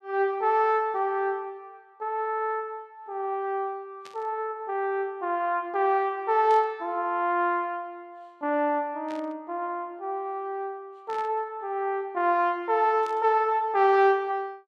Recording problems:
static burst; 5 times, first at 4 s; peak -15 dB vs average level

